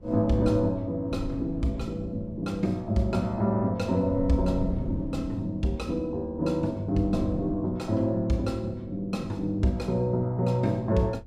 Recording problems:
wind noise; below 150 Hz, SNR 12 dB

